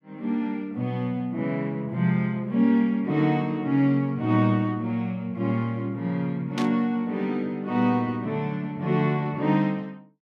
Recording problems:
burst of static; at 6.5 s; peak -4 dB vs average level

